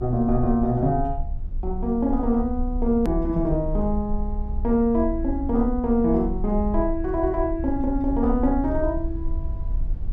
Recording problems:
low-frequency rumble; below 64 Hz, strongest tone 30 Hz, SNR 7 dB
edit click; at 3 s

